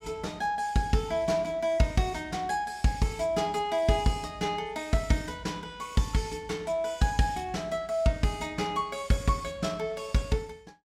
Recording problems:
none

